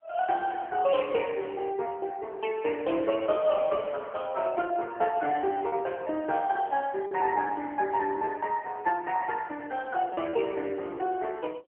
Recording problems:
telephone audio; 280 Hz to 3.1 kHz, AMR-NB
lost packets; 4% of the sound replaced, filled with repeated pitch periods

